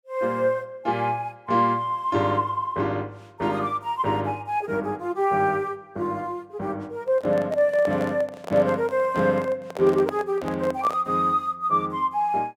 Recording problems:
handling noise; from 7 to 11 s; peak -1 dB vs average level

